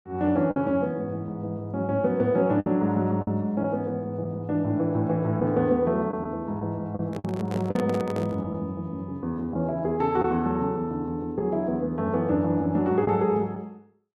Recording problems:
packet loss; 3% of the sound replaced, filled with the last packet
microphone handling noise; from 7 to 8.5 s; peak -2 dB vs average level

